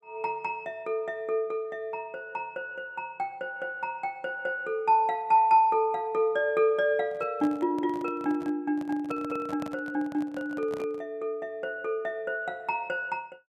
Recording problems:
microphone handling noise; from 7 to 11 s; peak -7 dB vs average level

